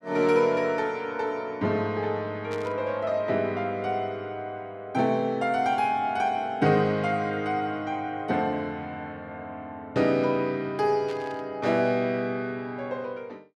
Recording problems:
static burst; at 2.5 s and at 11 s; peak -12 dB vs average level

